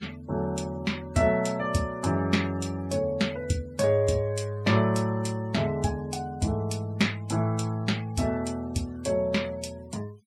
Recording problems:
noise reduction artefacts; signal-to-artefact ratio 22 dB

